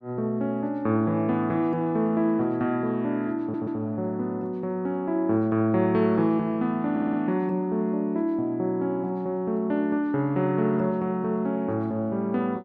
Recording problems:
audio stuttering; at 3.5 s and at 7 s

